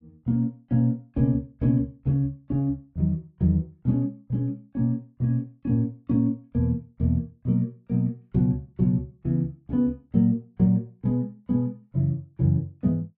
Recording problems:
none

